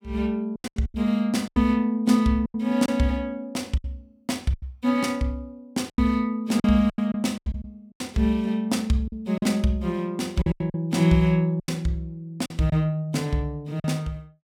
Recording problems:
lost packets; 10% of the sound replaced, filled with silence

